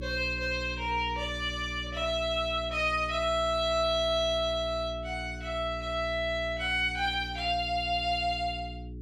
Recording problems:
hum; 60 Hz, harmonics up to 420 Hz, SNR 12 dB

